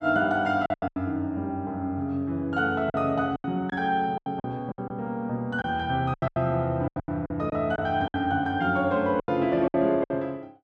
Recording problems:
packet loss; 12% of the sound replaced, filled with silence

